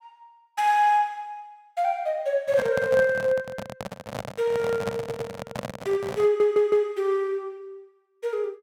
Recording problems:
handling noise; from 2.5 to 7 s; peak -2 dB vs average level
stutter; at 5 s and at 6 s

